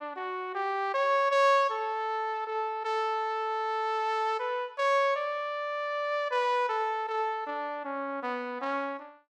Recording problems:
none

